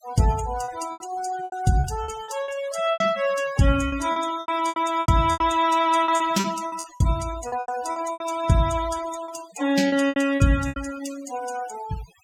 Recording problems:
noise reduction artefacts; signal-to-artefact ratio 15 dB
lost packets; 13% of the sound replaced, filled with repeated pitch periods

